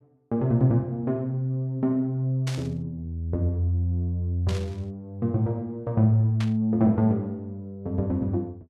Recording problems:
static burst; at 2.5 s, at 4.5 s and at 6.5 s; peak -6 dB vs average level

